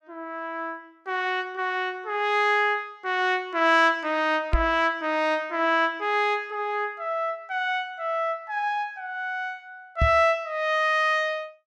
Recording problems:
microphone bump; at 4.5 s and at 10 s; peak +4 dB vs average level

